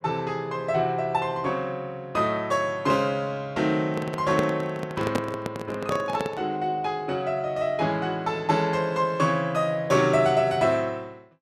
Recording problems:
handling noise; from 4 to 6.5 s; peak +3 dB vs average level

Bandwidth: 13.5 kHz